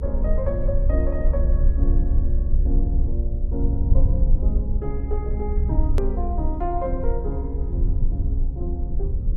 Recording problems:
hum; 60 Hz, harmonics up to 540 Hz, SNR 16 dB
low-frequency rumble; below 64 Hz, SNR -7 dB
edit click; at 6 s

